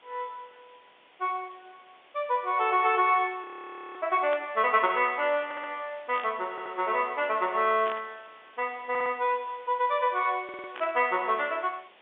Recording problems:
phone line; 300 Hz to 3.7 kHz, G.711
background hiss; SNR 27 dB
frozen audio; at 3.5 s for 0.5 s
static burst; 4 times, first at 4.5 s; peak -8 dB vs average level
stutter; 4 times, first at 5.5 s

